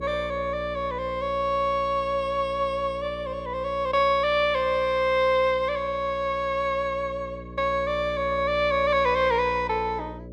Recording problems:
electrical hum; 60 Hz, harmonics up to 600 Hz, SNR 16 dB

